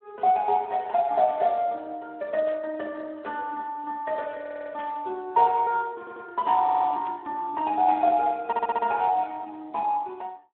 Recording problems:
telephone audio; 260 Hz to 2.8 kHz, Speex
burst of static; at 2.5 s, at 5 s and at 7 s; peak -16 dB vs average level
audio stuttering; 4 times, first at 4.5 s

